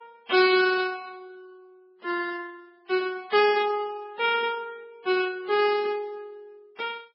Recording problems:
lossy compression; MP3, then Vorbis, log-spectral distance 2 dB, nothing above 4.6 kHz

